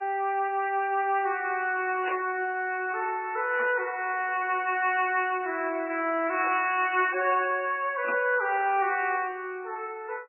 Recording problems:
codec artefacts; MP3, log-spectral distance 3 dB, nothing above 2.6 kHz
burst of static; 4 times, first at 2 s; peak -3 dB vs average level

